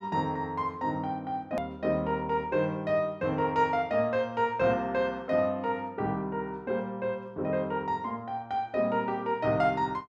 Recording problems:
click at an edit; at 1.5 s

